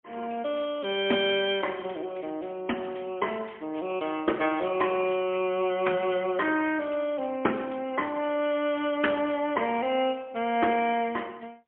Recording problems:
telephone audio; 170 Hz to 3.3 kHz, AMR-NB, then MP3

